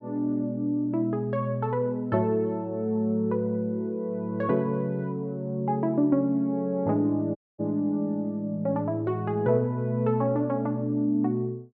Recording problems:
audio cutting out; at 7.5 s

